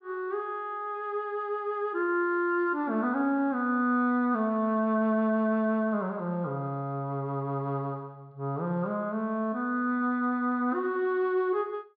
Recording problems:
low-pass filter; nothing above 5.5 kHz

